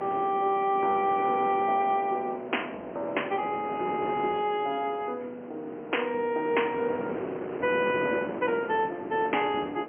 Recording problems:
phone line; 280 Hz to 3.1 kHz, G.711
wind noise; below 690 Hz, SNR 10 dB

